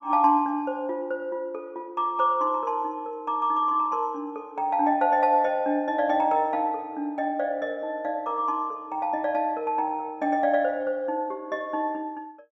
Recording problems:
none

